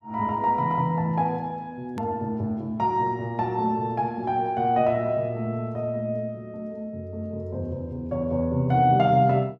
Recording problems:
edit click; at 2 s

